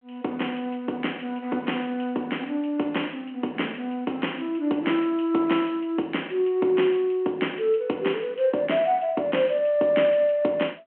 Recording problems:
phone line; 240 Hz to 3.2 kHz, G.726

